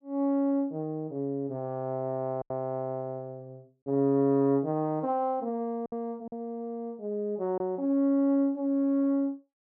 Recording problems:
packet loss; 2% of the sound replaced, filled with silence

